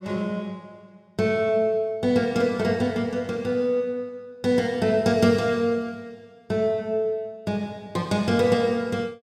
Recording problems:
none

